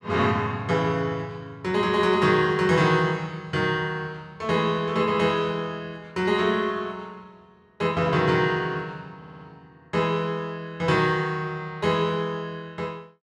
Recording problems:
audio stuttering; at 9 s

